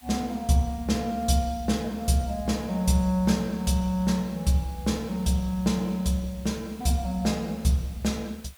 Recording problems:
background hiss; SNR 24 dB

